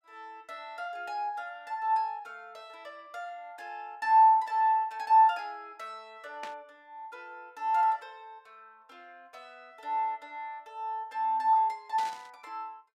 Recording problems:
burst of static; at 6.5 s and at 12 s; peak -12 dB vs average level

